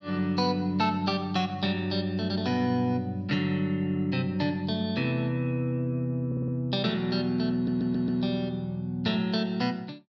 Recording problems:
stutter; at 6.5 s and at 7.5 s

